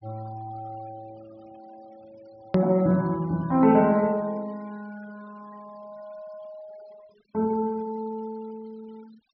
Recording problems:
treble cut off; nothing above 5.5 kHz
noise reduction artefacts; signal-to-artefact ratio 28 dB
hard cut with a click; at 2.5 s

